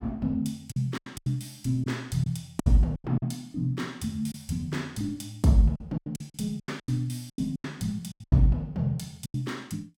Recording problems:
lost packets; 12% of the sound replaced, filled with silence

